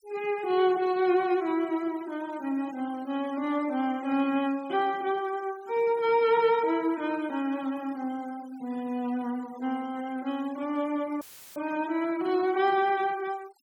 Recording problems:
denoising artefacts; signal-to-artefact ratio 23 dB
dropout; at 11 s; filled with static

